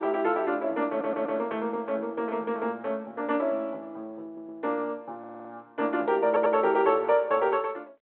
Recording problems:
phone line; 240 Hz to 3.6 kHz, G.726
audio stuttering; 4 times, first at 1 s

